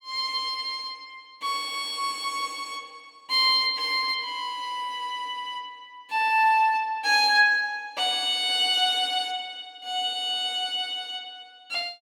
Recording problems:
none

